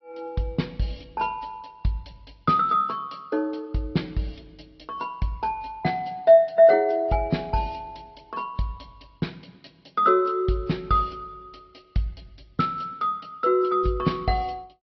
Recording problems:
low-pass filter; nothing above 5.3 kHz
lossy codec; AAC, log-spectral distance 2 dB

